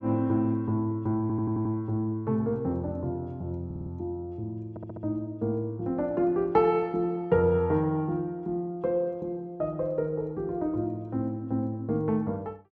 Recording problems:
stutter; at 1 s, at 3.5 s and at 4.5 s

